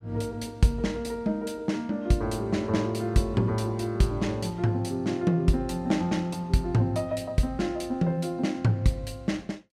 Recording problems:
none

